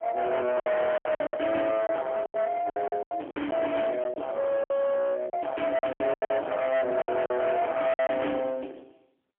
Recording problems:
phone line; 260 Hz to 3.3 kHz, AMR-NB, then MP3
distortion; hard clipping, uneven, signal-to-distortion ratio 7 dB
packet loss; 12% of the sound replaced, filled with silence

